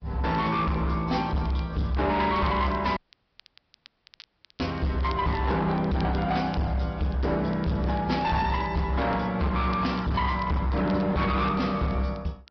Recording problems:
low-pass filter; nothing above 5.5 kHz
lossy codec; AAC, log-spectral distance 3 dB
distorted audio; hard clipping, signal-to-distortion ratio 8 dB
crackle; vinyl, SNR 25 dB
audio cutting out; at 3 s for 1.5 s

